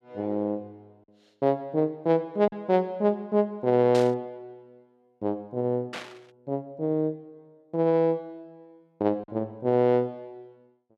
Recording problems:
packet loss; 1% of the sound replaced, filled with silence
burst of static; at 4 s and at 6 s; peak -6 dB vs average level

